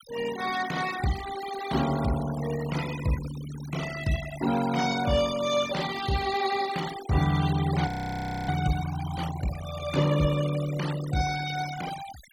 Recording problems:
noise reduction artefacts; signal-to-artefact ratio 12 dB
frozen audio; at 8 s for 0.5 s

